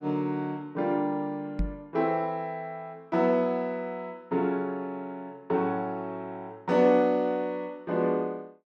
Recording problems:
microphone bump; at 1.5 s; peak +2 dB vs average level

